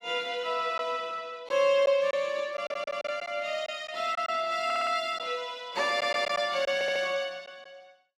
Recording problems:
packet loss; 4% of the sound replaced, filled with silence
audio stuttering; 4 times, first at 2.5 s

